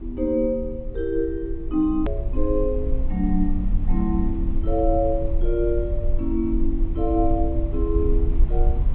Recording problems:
treble missing; nothing above 4 kHz
low-frequency rumble; below 56 Hz, strongest tone 22 Hz, SNR 2 dB
hard cut with a click; at 2 s

